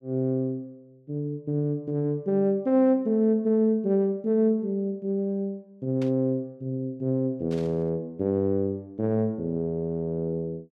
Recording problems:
static burst; at 6 s and at 7.5 s; peak -14 dB vs average level

